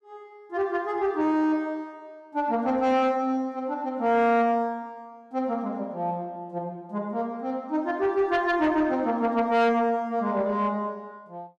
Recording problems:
distorted audio; soft clipping, signal-to-distortion ratio 11 dB

